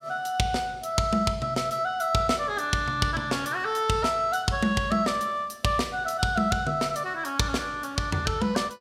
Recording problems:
none

